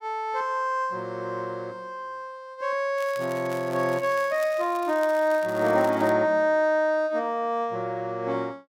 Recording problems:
crackle; from 3 to 6 s; loose cable, SNR 21 dB

